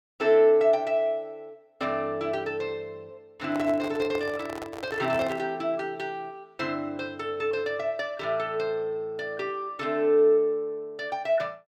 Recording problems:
microphone handling noise; from 3.5 to 5.5 s; peak -6 dB vs average level

